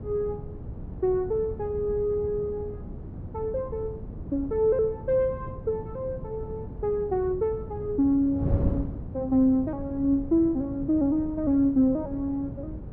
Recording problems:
wind on the microphone; below 190 Hz, SNR 10 dB

